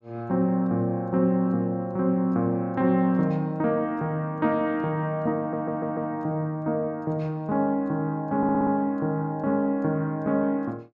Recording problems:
stutter; at 5.5 s and at 8.5 s

